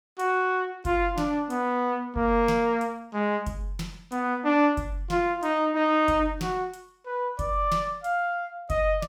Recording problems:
none

